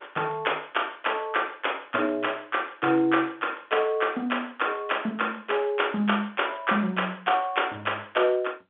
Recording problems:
phone line; 220 Hz to 3.5 kHz, G.711

